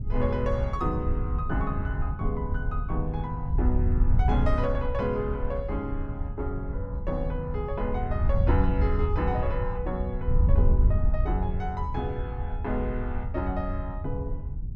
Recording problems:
wind on the microphone; below 84 Hz, SNR -2 dB

